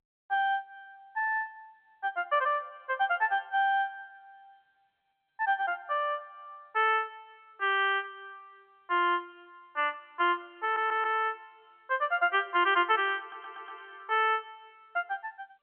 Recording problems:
telephone audio; 300 Hz to 3.5 kHz, G.711
audio stuttering; at 11 s and at 13 s

